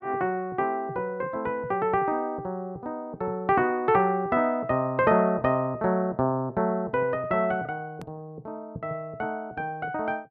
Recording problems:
hard cut with a click; at 8 s

